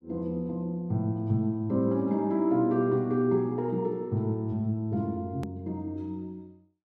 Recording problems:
edit click; at 5.5 s

